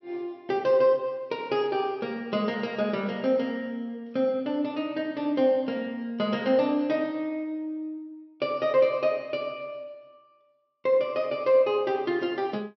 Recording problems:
treble cut off; nothing above 5.7 kHz

